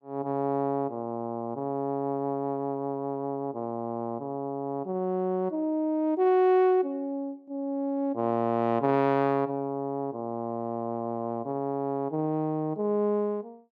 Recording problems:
none

